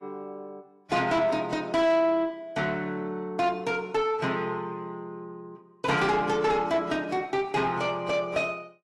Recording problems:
codec artefacts; AAC, log-spectral distance 2 dB
distorted audio; soft clipping, signal-to-distortion ratio 11 dB

